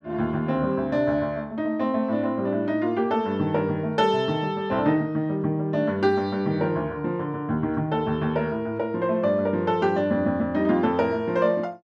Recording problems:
none

